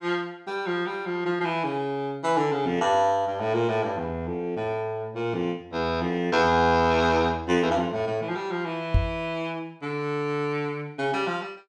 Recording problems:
microphone bump; at 9 s; peak +6 dB vs average level

